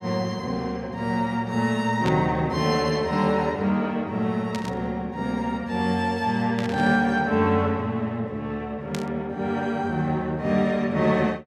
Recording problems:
burst of static; 4 times, first at 2 s; peak -5 dB vs average level

